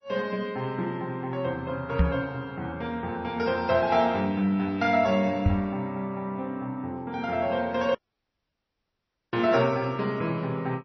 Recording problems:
lossy compression; MP3, log-spectral distance 2 dB, nothing above 5.8 kHz
knock on the microphone; at 2 s and at 5.5 s; peak +8 dB vs average level
audio cutting out; at 8 s for 1.5 s

